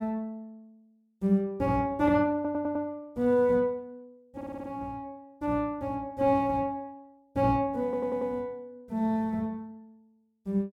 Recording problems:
audio stuttering; at 2.5 s, at 4.5 s and at 8 s

